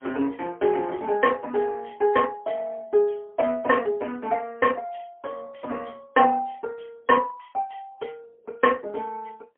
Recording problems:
telephone audio; 220 Hz to 3.2 kHz, AMR-NB, then MP3

